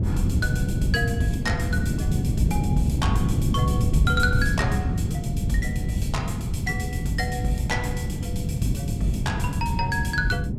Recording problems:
wind noise; below 180 Hz, SNR -3 dB

